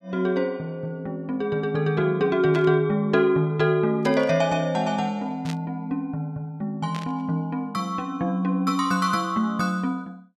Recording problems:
burst of static; 4 times, first at 2.5 s; peak -8 dB vs average level

